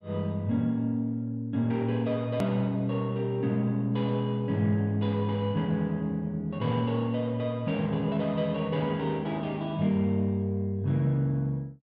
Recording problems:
edit click; at 2.5 s

